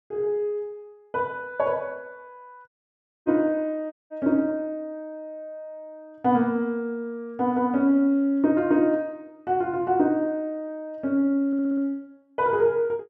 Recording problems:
dropout; at 2.5 s for 0.5 s and at 4 s
audio stuttering; at 11 s

